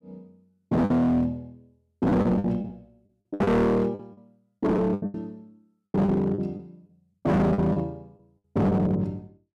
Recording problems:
distortion; hard clipping, signal-to-distortion ratio 6 dB
lost packets; 13% of the sound replaced, filled with the last packet

